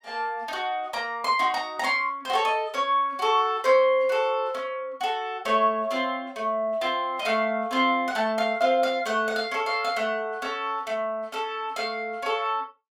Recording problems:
none

